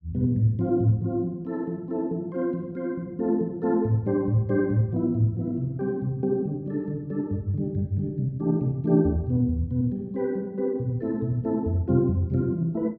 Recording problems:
none

